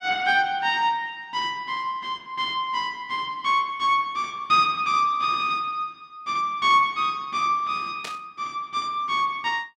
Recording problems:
burst of static; at 8 s; peak -6 dB vs average level

